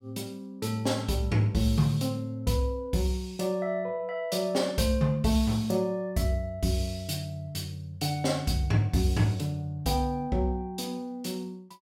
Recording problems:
none

